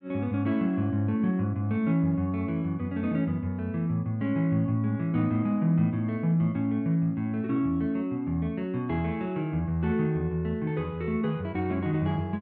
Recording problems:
none

